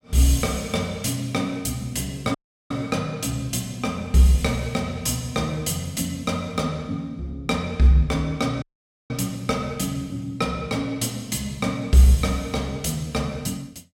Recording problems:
audio cutting out; at 2.5 s and at 8.5 s

